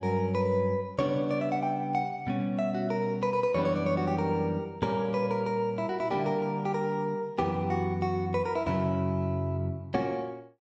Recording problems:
none

